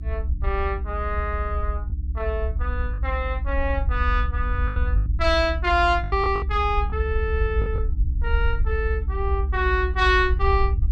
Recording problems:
hum; 60 Hz, harmonics up to 300 Hz, SNR 16 dB
rumble; below 70 Hz, SNR 1 dB
packet loss; 4% of the sound replaced, filled with the last packet

